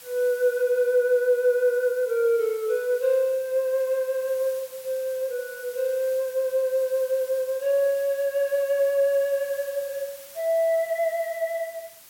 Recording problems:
background hiss; slope +1 dB per octave, SNR 19 dB

